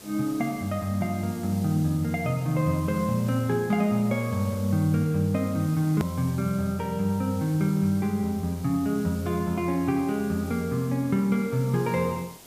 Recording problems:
hiss; SNR 19 dB
edit click; at 6 s

